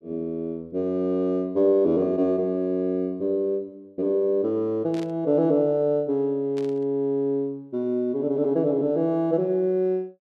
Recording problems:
static burst; at 5 s and at 6.5 s; peak -15 dB vs average level

